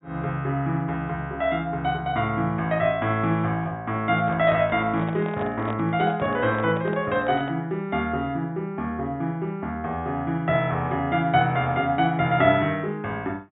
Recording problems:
low-pass filter; nothing above 4 kHz
handling noise; from 4 to 7.5 s; peak -5 dB vs average level

